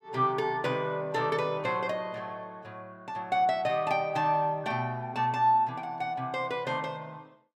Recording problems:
none

